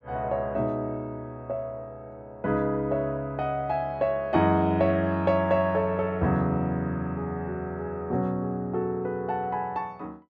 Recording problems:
none

